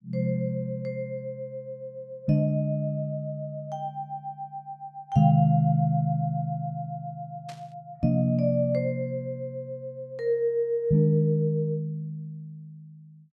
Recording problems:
static burst; at 7.5 s; peak -15 dB vs average level

